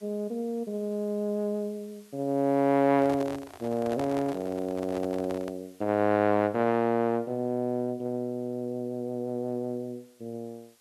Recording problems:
background hiss; slope 0 dB per octave, SNR 30 dB
handling noise; from 3 to 5.5 s; peak -5 dB vs average level

